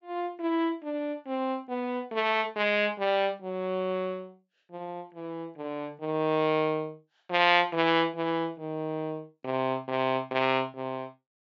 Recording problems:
low-pass filter; nothing above 7.6 kHz

